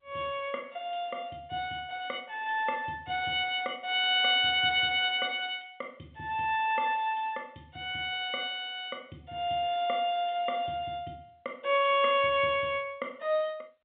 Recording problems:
phone line; 190 Hz to 3.6 kHz, G.711

